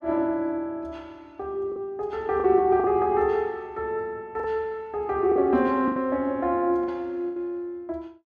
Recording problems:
packet loss; 5% of the sound replaced, filled with the last packet

